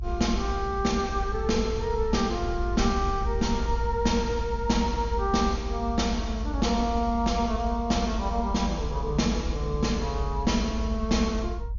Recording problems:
treble missing; nothing above 7.1 kHz
rumble; below 68 Hz, strongest tone 52 Hz, SNR 5 dB

